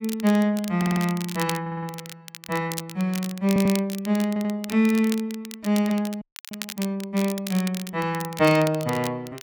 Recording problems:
crackle; vinyl, SNR 13 dB
stutter; 4 times, first at 1 s
audio freezing; at 6 s

